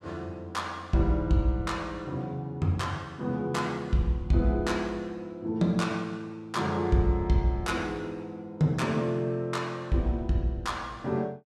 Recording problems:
none

